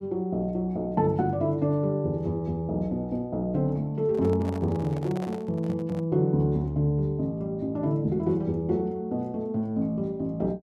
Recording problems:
handling noise; from 4 to 6 s; peak -8 dB vs average level

